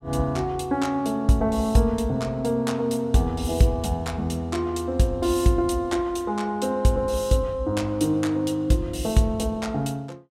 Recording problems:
none

